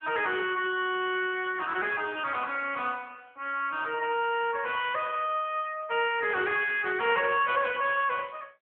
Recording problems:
phone line; 300 Hz to 3.4 kHz, AMR-NB

